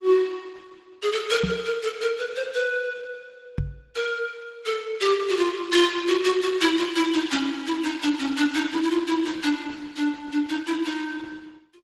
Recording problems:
lossy codec; MP3, then Opus, log-spectral distance 4 dB, nothing above 12 kHz
microphone thump; at 1.5 s and at 3.5 s; peak +3 dB vs average level

